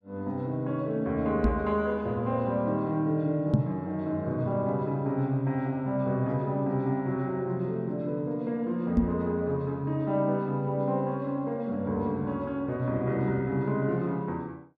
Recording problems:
microphone bump; at 1.5 s, at 3.5 s and at 9 s; peak +9 dB vs average level

